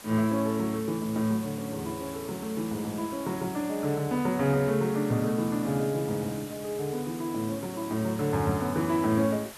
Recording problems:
background hiss; slope -1 dB per octave, SNR 15 dB

